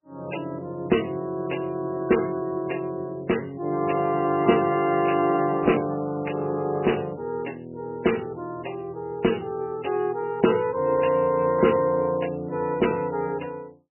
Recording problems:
codec artefacts; MP3, log-spectral distance 4 dB, nothing above 2.9 kHz

